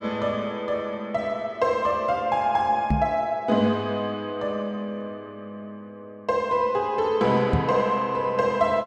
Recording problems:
microphone thump; at 3 s and at 7.5 s; peak +5 dB vs average level

